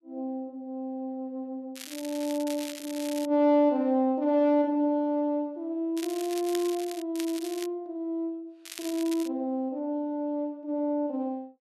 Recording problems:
crackle; 4 times, first at 2 s; loose cable, SNR 13 dB

